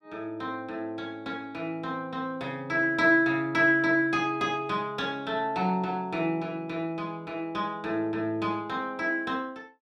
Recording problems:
none

